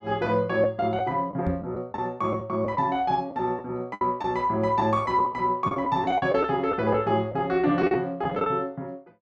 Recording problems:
packet loss; 7% of the sound replaced, filled with the last packet
knock on the microphone; at 1.5 s; peak -1 dB vs average level

